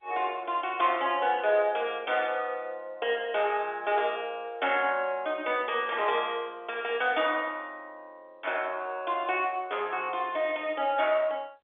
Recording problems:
phone line; 340 Hz to 3.5 kHz, G.711

